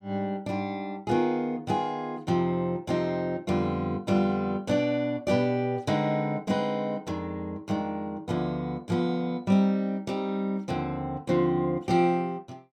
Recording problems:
none

